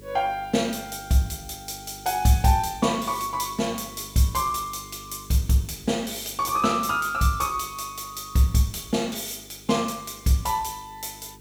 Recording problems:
electrical hum; 50 Hz, harmonics up to 450 Hz, SNR 22 dB
hiss; slope +2 dB per octave, SNR 29 dB

